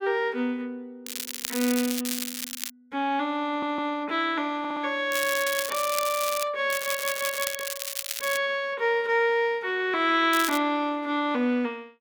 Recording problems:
crackling; 4 times, first at 1 s; loose cable, SNR 5 dB
audio stuttering; at 3.5 s, at 4.5 s and at 7 s

